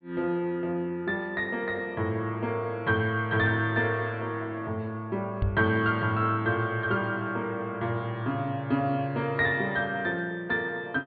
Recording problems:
treble cut off; nothing above 4.6 kHz
microphone bump; at 5.5 s; peak +4 dB vs average level

